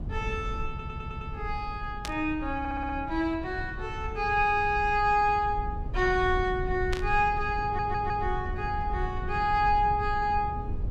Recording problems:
low-frequency rumble; below 96 Hz, SNR 9 dB
stutter; at 0.5 s, at 2.5 s and at 7.5 s
static burst; at 2 s and at 7 s; peak -3 dB vs average level

